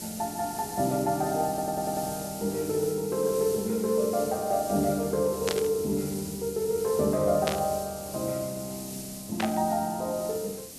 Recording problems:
hiss; SNR 10 dB
stutter; at 1.5 s
burst of static; at 5.5 s, at 7.5 s and at 9.5 s; peak +1 dB vs average level

